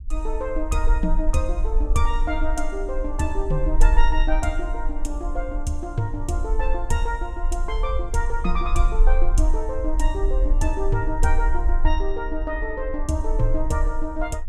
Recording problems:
low-frequency rumble; below 40 Hz, strongest tone 20 Hz, SNR -1 dB

